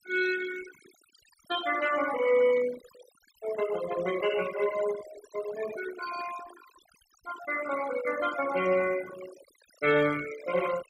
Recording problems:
noise reduction artefacts; signal-to-artefact ratio 12 dB

